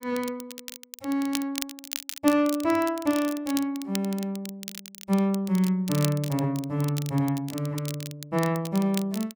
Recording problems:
crackling; vinyl, SNR 12 dB

